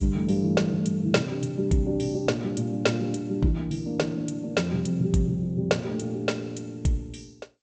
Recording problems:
lossy codec; G.722, log-spectral distance 3 dB, nothing above 8 kHz

